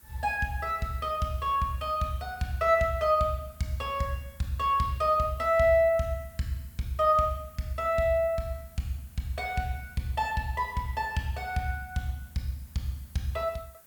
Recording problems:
background hiss; SNR 25 dB

